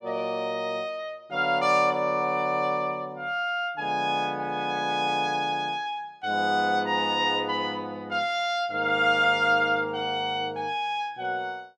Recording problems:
none

